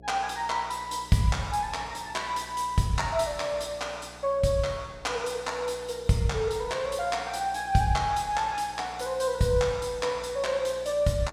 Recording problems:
hum; 60 Hz, harmonics up to 720 Hz, SNR 22 dB

